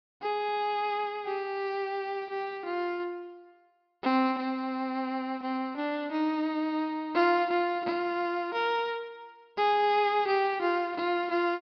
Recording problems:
low-pass filter; nothing above 5.5 kHz

